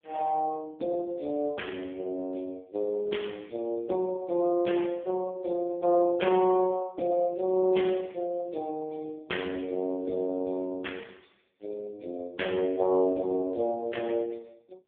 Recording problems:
phone line; 240 Hz to 3.4 kHz, AMR-NB

